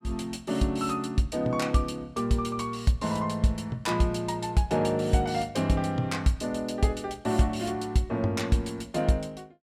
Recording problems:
none

